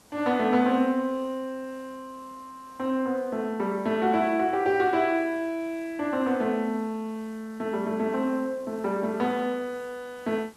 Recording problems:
hiss; SNR 27 dB

